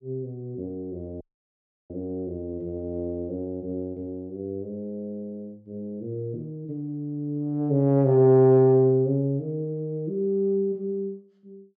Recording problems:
dropout; at 1 s for 0.5 s

